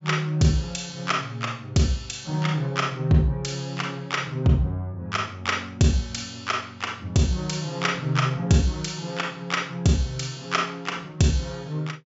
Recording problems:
treble missing; nothing above 8 kHz

